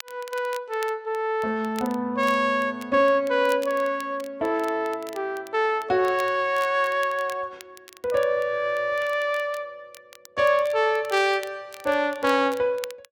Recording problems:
crackling; vinyl, SNR 22 dB

